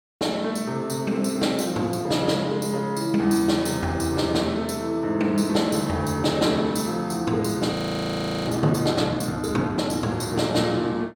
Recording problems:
audio freezing; at 7.5 s for 0.5 s

